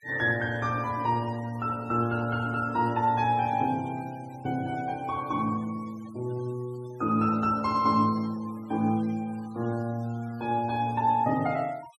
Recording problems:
denoising artefacts; signal-to-artefact ratio 24 dB

